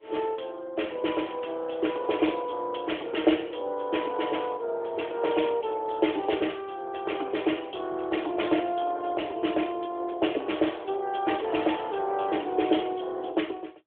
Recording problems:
phone line; 260 Hz to 3.5 kHz, AMR-NB

